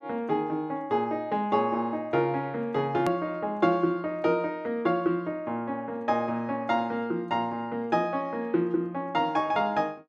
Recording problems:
click at an edit; at 3 s

